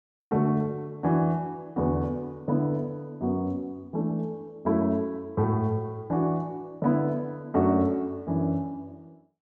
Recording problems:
none

